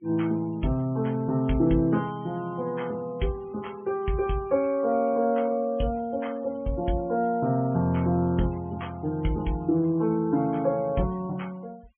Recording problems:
treble missing; nothing above 3.2 kHz
denoising artefacts; signal-to-artefact ratio 27 dB

